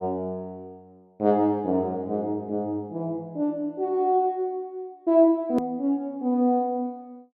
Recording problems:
click at an edit; at 5.5 s

